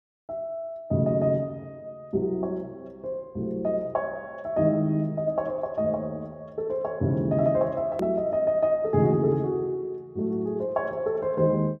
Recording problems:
click at an edit; at 8 s

